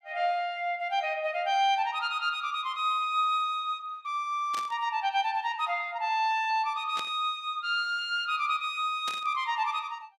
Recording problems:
burst of static; at 4.5 s, at 7 s and at 9 s; peak -5 dB vs average level

